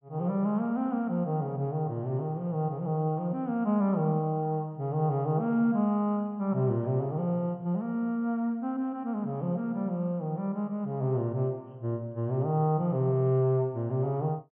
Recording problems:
treble cut off; nothing above 3.2 kHz

